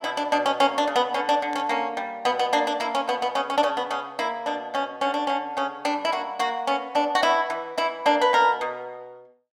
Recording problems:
static burst; at 1.5 s; peak -15 dB vs average level

